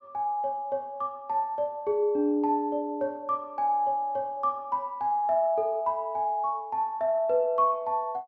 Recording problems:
none

